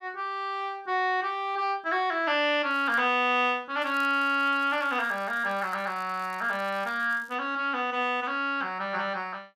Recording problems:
crackle; at 2.5 s and from 4 to 7.5 s; loose cable, SNR 28 dB

